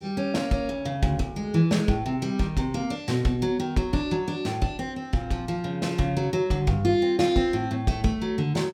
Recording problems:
none

